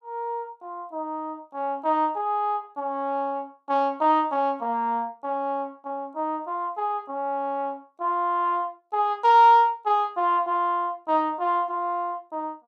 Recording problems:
none

